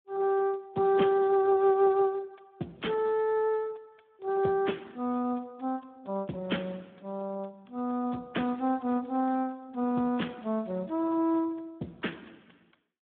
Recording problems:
phone line; 170 Hz to 3.5 kHz, Speex

